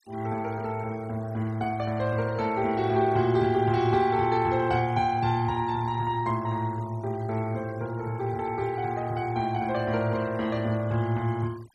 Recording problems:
noise reduction artefacts; signal-to-artefact ratio 22 dB

